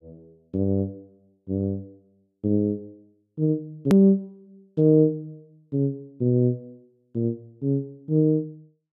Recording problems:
hard cut with a click; at 4 s

